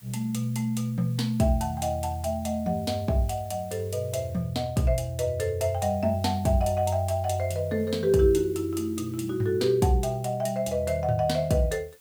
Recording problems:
background hiss; slope 0 dB per octave, SNR 26 dB

